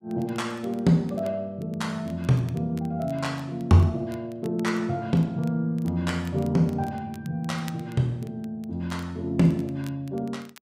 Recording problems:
crackle; vinyl, SNR 27 dB

